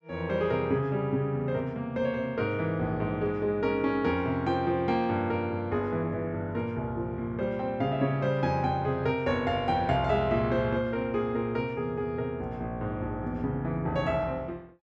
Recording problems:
none

